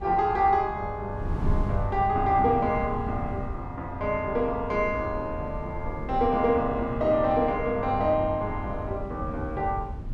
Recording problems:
wind noise; below 120 Hz, SNR 10 dB

